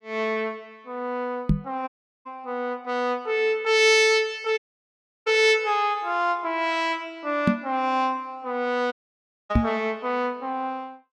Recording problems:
knock on the microphone; at 1.5 s, at 7.5 s and at 9.5 s; peak +7 dB vs average level
dropout; at 2 s, at 4.5 s for 0.5 s and at 9 s for 0.5 s

